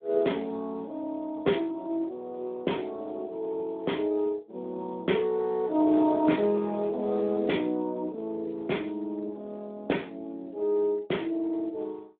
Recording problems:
telephone audio; 190 Hz to 3.4 kHz, Speex

